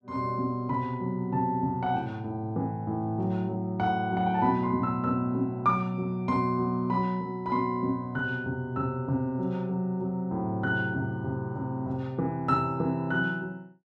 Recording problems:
none

